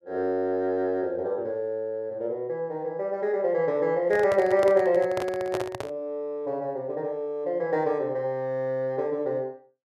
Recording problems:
handling noise; from 4 to 6 s; peak 0 dB vs average level

